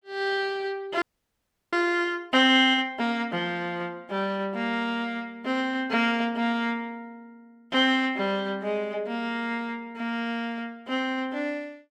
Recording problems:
frozen audio; at 1 s for 0.5 s

